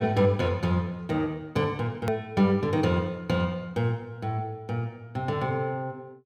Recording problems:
hard cut with a click; at 2 s

